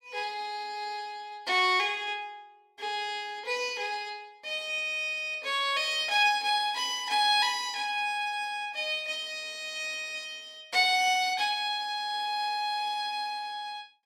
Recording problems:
none

